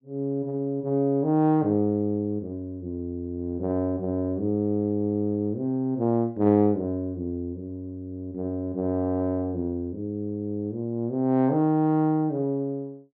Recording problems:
none

